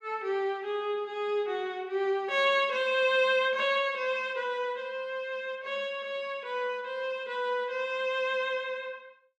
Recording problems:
none

